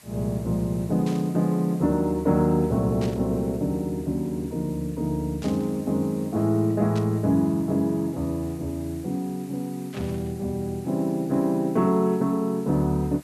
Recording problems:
hiss; slope -1 dB per octave, SNR 24 dB
burst of static; 5 times, first at 1 s; peak -10 dB vs average level

